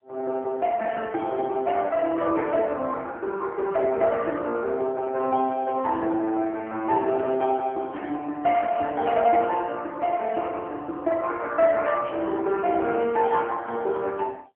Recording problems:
phone line; 260 Hz to 3.2 kHz, AMR-NB
static burst; at 8.5 s and at 12 s; peak -12 dB vs average level

